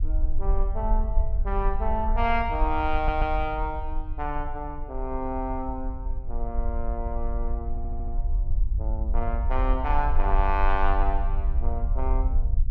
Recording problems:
rumble; below 50 Hz, SNR -1 dB
stutter; at 3 s and at 7.5 s

